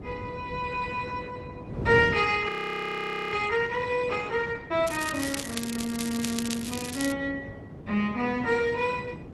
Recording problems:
lossy codec; Opus, log-spectral distance 5 dB, nothing above 16.6 kHz
wind noise; below 340 Hz, SNR 11 dB
audio freezing; at 2.5 s for 1 s
crackling; from 5 to 7 s; loose cable, SNR 6 dB

